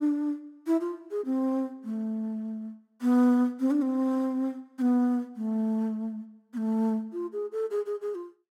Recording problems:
none

